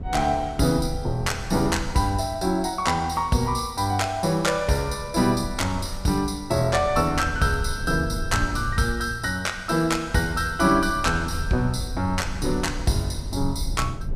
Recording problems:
rumble; below 84 Hz, SNR 11 dB

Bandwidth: 15 kHz